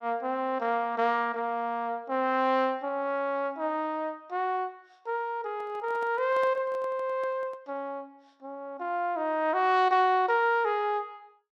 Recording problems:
handling noise; from 5.5 to 7.5 s; peak -11 dB vs average level

